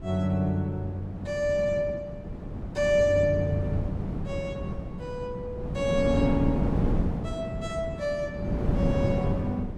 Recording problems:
wind noise; below 250 Hz, SNR 3 dB

